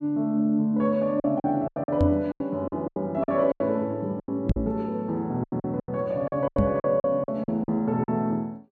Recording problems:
lost packets; 14% of the sound replaced, filled with silence
knock on the microphone; at 2 s, at 4.5 s and at 6.5 s; peak +6 dB vs average level

